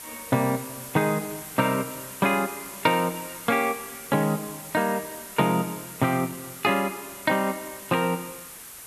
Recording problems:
hiss; slope -1 dB per octave, SNR 12 dB

